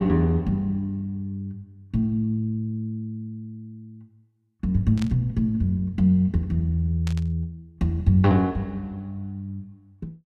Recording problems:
burst of static; at 5 s and at 7 s; peak -9 dB vs average level

